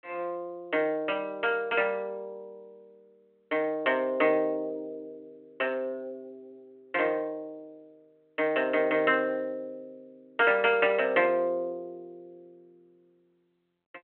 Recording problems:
phone line; 220 Hz to 3.2 kHz, G.726

